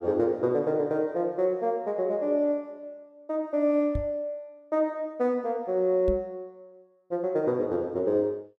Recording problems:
microphone thump; at 4 s and at 6 s; peak 0 dB vs average level

